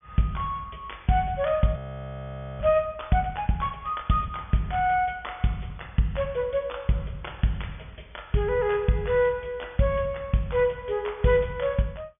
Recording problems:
treble missing; nothing above 3.5 kHz
audio freezing; at 2 s for 1 s

